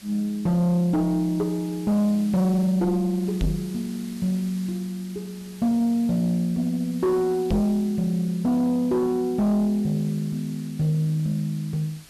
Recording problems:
distortion; soft clipping, signal-to-distortion ratio 10 dB
hiss; SNR 22 dB
microphone thump; at 3.5 s and at 7.5 s; peak +3 dB vs average level

